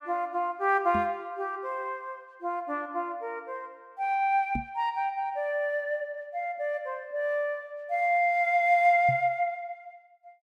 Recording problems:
knock on the microphone; at 1 s, at 4.5 s and at 9 s; peak -2 dB vs average level

